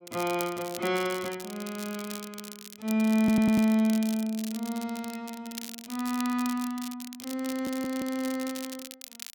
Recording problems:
crackling; vinyl, SNR 13 dB
audio stuttering; at 3 s and at 7.5 s

